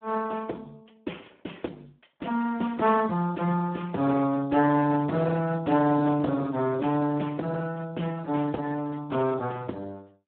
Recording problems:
phone line; 170 Hz to 2.6 kHz, Speex
distortion; hard clipping, signal-to-distortion ratio 13 dB

